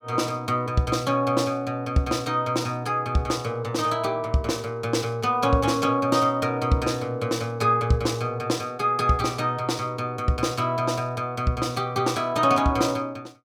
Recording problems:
none

